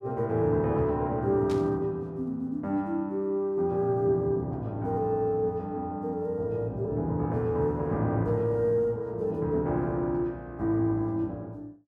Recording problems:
static burst; at 1.5 s; peak -12 dB vs average level

